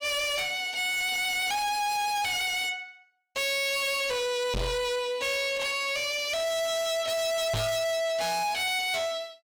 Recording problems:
distortion; soft clipping, signal-to-distortion ratio 6 dB
microphone bump; at 4.5 s and at 7.5 s; peak +3 dB vs average level

